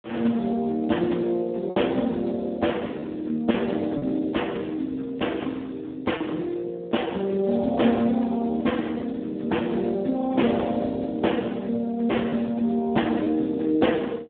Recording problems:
telephone audio; 220 Hz to 3.6 kHz, Speex
lost packets; 1.4% of the sound replaced, filled with repeated pitch periods

